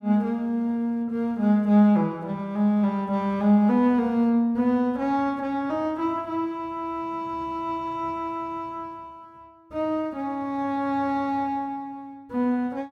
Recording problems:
none

